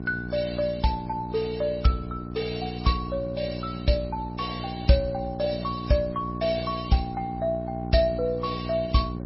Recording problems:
lossy compression; MP3, log-spectral distance 5 dB, nothing above 5.5 kHz
hum; 60 Hz, harmonics up to 1.1 kHz, SNR 7 dB

